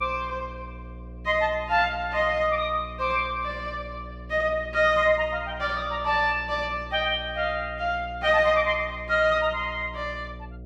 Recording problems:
hum; 60 Hz, harmonics up to 720 Hz, SNR 16 dB

